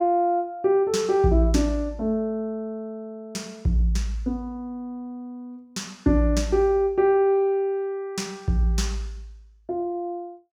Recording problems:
none

